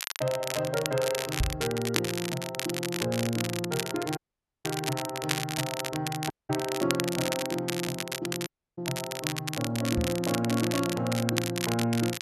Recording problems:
crackle; vinyl, SNR 3 dB
microphone bump; at 1.5 s and at 10 s; peak +6 dB vs average level
audio cutting out; at 4 s, at 6.5 s and at 8.5 s

